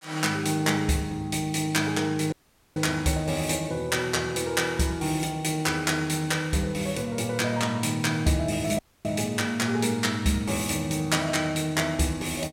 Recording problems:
dropout; at 2.5 s and at 9 s

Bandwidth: 16.5 kHz